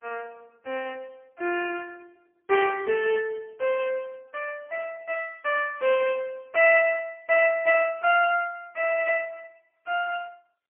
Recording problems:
telephone audio; 340 Hz to 3.1 kHz, AMR-NB, then MP3

